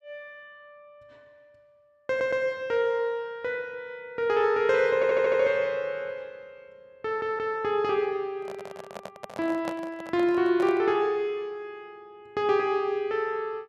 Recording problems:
stutter; at 2 s, at 5 s and at 7 s
handling noise; from 8.5 to 11 s; peak -4 dB vs average level

